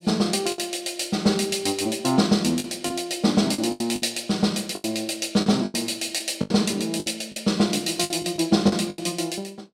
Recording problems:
packet loss; 10% of the sound replaced, filled with the last packet

